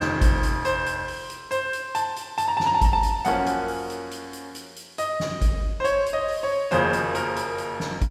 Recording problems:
none

